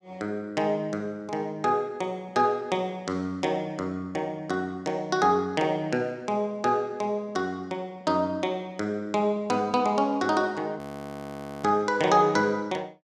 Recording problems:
audio freezing; at 11 s for 1 s

